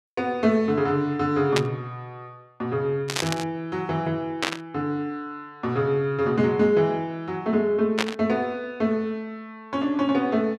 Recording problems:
burst of static; 4 times, first at 1.5 s; peak +4 dB vs average level

